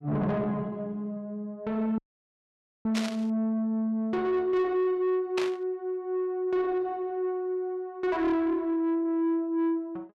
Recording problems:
distorted audio; soft clipping, signal-to-distortion ratio 11 dB
dropout; at 2 s for 1 s
static burst; at 3 s and at 5.5 s; peak 0 dB vs average level

